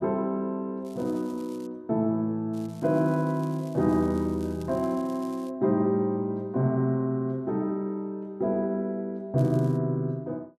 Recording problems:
crackle; at 1 s, from 2.5 to 5.5 s and at 9.5 s; loose cable, SNR 27 dB

